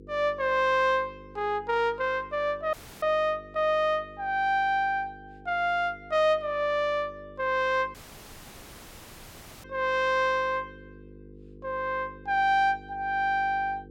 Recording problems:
electrical hum; 50 Hz, harmonics up to 500 Hz, SNR 22 dB
audio cutting out; at 2.5 s and at 8 s for 1.5 s

